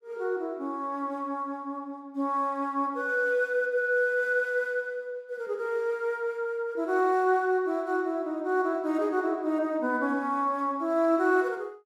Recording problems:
none

